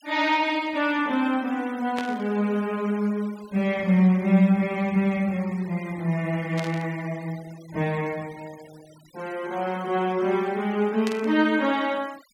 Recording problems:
noise reduction artefacts; signal-to-artefact ratio 23 dB
static burst; at 2 s, at 6.5 s and at 11 s; peak -5 dB vs average level

